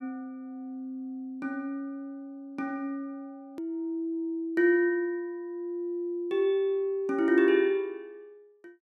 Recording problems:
click at an edit; at 3.5 s

